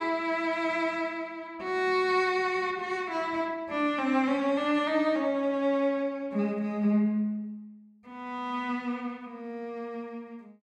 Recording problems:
none

